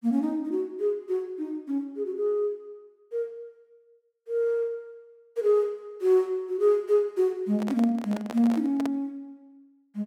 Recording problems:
handling noise; from 7.5 to 9 s; peak -5 dB vs average level

